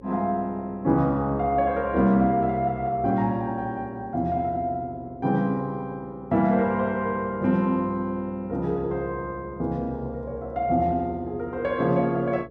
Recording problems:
hum; 60 Hz, harmonics up to 540 Hz, SNR 22 dB

